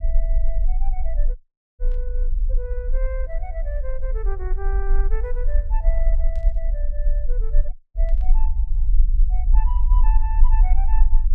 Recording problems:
rumble; below 40 Hz, strongest tone 20 Hz, SNR -14 dB
dropout; at 1.5 s and at 7.5 s
burst of static; at 2 s, at 6.5 s and at 8 s; peak -13 dB vs average level

